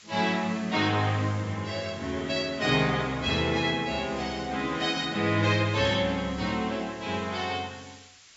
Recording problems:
treble missing; nothing above 8 kHz
background hiss; SNR 22 dB

